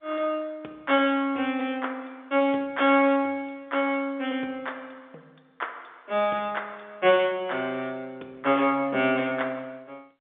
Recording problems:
telephone audio; 260 Hz to 3.9 kHz, G.711

